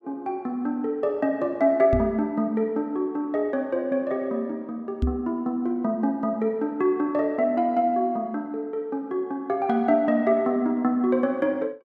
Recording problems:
knock on the microphone; at 2 s and at 5 s; peak +4 dB vs average level

